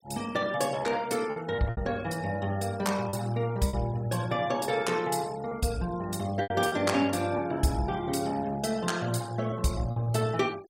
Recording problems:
noise reduction artefacts; signal-to-artefact ratio 20 dB
lost packets; 4% of the sound replaced, filled with repeated pitch periods

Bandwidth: 16.5 kHz